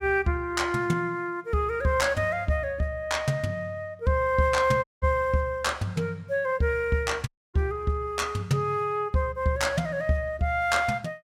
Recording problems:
dropout; at 5 s and at 7.5 s

